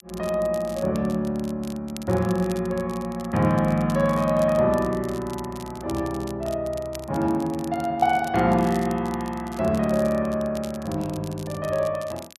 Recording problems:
crackling; vinyl, SNR 20 dB

